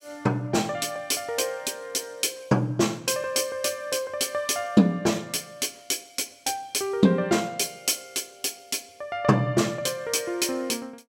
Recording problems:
none

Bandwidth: 16 kHz